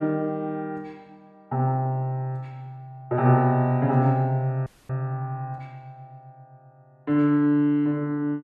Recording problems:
audio freezing; at 4.5 s

